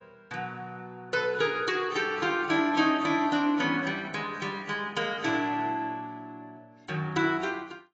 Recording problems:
codec artefacts; AAC, log-spectral distance 2 dB

